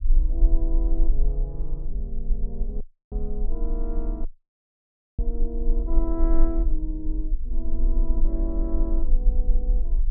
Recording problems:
rumble; below 38 Hz, strongest tone 18 Hz, SNR -8 dB
audio cutting out; at 3 s and at 4.5 s for 1 s

